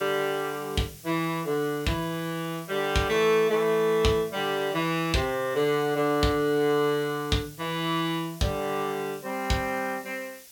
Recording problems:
hiss; SNR 19 dB

